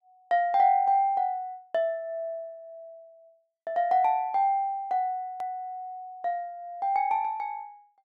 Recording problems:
edit click; at 5.5 s

